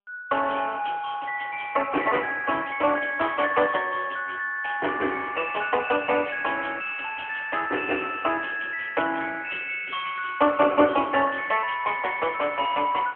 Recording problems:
telephone audio; 220 Hz to 3.2 kHz, AMR-NB

